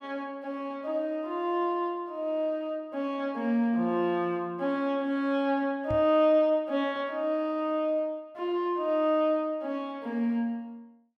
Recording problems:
microphone thump; at 6 s; peak -4 dB vs average level

